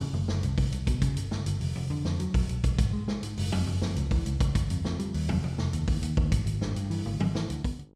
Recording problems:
hum; 50 Hz, harmonics up to 1.1 kHz, SNR 32 dB

